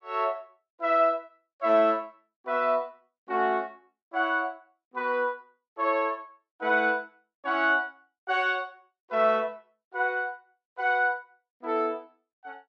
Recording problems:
none

